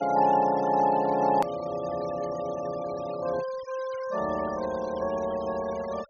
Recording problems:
treble missing; nothing above 6.6 kHz
denoising artefacts; signal-to-artefact ratio 17 dB
click at an edit; at 1.5 s

